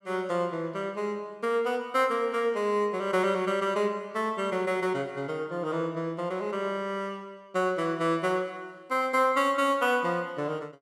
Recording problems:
none

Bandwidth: 14.5 kHz